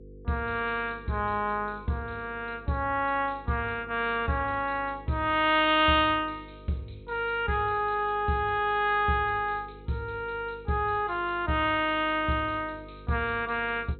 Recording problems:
treble cut off; nothing above 4 kHz
hum; 50 Hz, harmonics up to 500 Hz, SNR 21 dB

